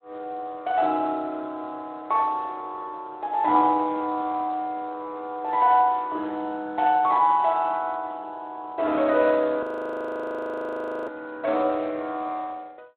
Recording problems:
phone line; 280 Hz to 3.7 kHz, Speex
frozen audio; at 9.5 s for 1.5 s

